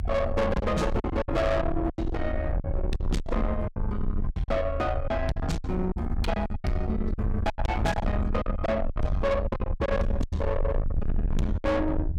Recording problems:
distortion; soft clipping, signal-to-distortion ratio 7 dB
low-frequency rumble; below 100 Hz, SNR 3 dB
packet loss; 13% of the sound replaced, filled with silence

